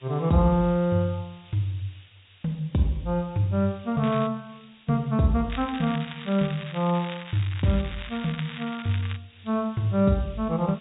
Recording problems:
low-pass filter; nothing above 4 kHz
hiss; SNR 27 dB
crackling; at 4 s and from 5.5 to 9 s; loose cable, SNR 14 dB

